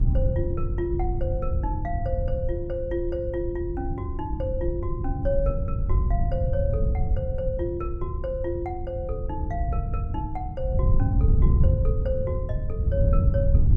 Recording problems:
wind noise; below 100 Hz, SNR -4 dB

